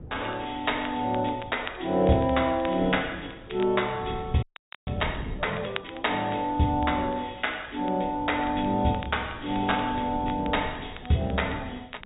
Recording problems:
low-pass filter; nothing above 3.8 kHz
codec artefacts; MP2, log-spectral distance 3 dB
wind on the microphone; below 250 Hz, SNR 16 dB
crackle; vinyl, SNR 19 dB
audio freezing; at 4.5 s

